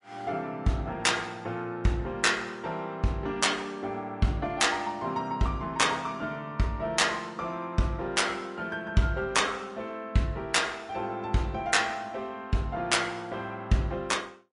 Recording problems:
lossy compression; MP3, log-spectral distance 2 dB, nothing above 11 kHz

